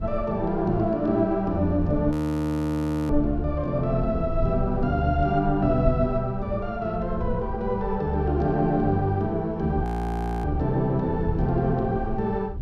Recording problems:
low-frequency rumble; below 82 Hz, SNR 11 dB
audio freezing; at 2 s for 1 s and at 10 s for 0.5 s

